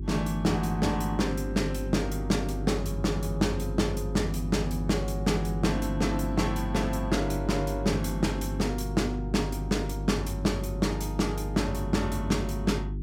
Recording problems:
electrical hum; 50 Hz, harmonics up to 400 Hz, SNR 5 dB

